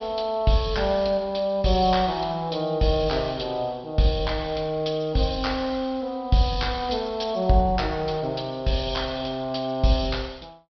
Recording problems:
treble cut off; nothing above 5.5 kHz

